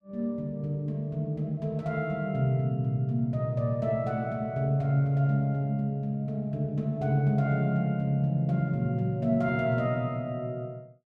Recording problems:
none

